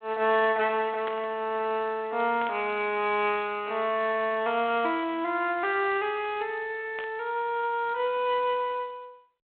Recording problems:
telephone audio; 260 Hz to 3.7 kHz, G.726
static burst; at 1 s, at 2.5 s and at 7 s; peak -7 dB vs average level

